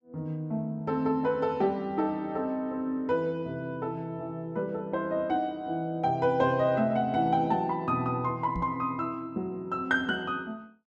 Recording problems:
knock on the microphone; at 8.5 s; peak -2 dB vs average level

